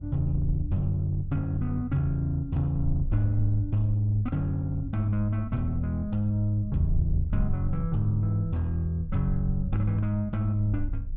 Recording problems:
wind noise; below 62 Hz, SNR 9 dB

